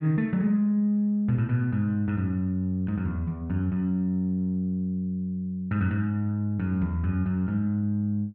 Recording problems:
none

